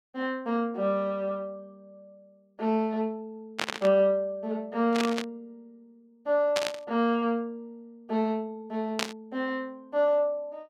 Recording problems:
static burst; 4 times, first at 3.5 s; peak +3 dB vs average level

